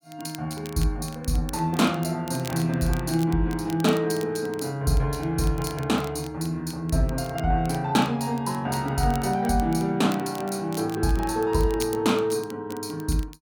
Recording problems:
crackling; vinyl, SNR 19 dB

